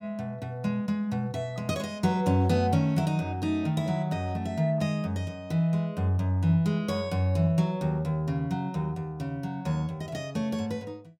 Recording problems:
none

